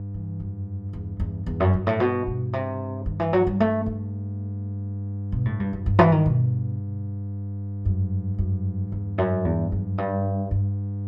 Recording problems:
hum; 50 Hz, harmonics up to 500 Hz, SNR 7 dB

